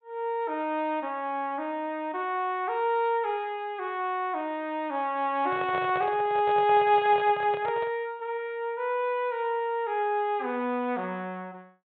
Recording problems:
low-pass filter; nothing above 4 kHz
handling noise; from 5.5 to 8 s; peak -4 dB vs average level

